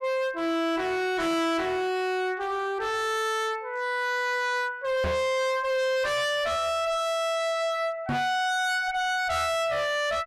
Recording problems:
distortion; hard clipping, uneven, signal-to-distortion ratio 6 dB
microphone thump; at 5 s and at 8 s; peak +2 dB vs average level

